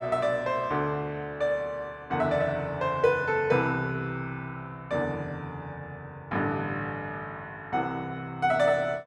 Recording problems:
none

